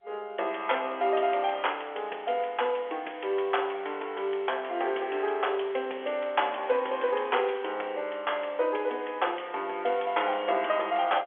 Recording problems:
phone line; 320 Hz to 3.4 kHz, G.711

